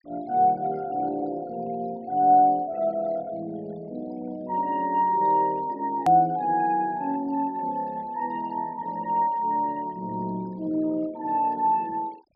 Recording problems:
treble cut off; nothing above 5.5 kHz
denoising artefacts; signal-to-artefact ratio 26 dB
edit click; at 6 s

